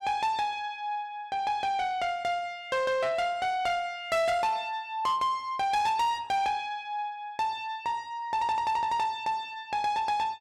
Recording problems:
distortion; soft clipping, signal-to-distortion ratio 10 dB

